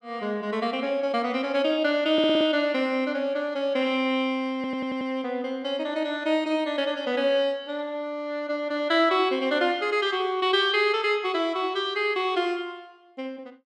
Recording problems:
audio stuttering; at 2 s and at 4.5 s

